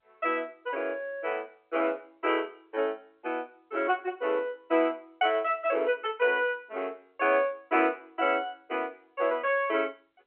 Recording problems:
telephone audio; 280 Hz to 3.2 kHz, G.711

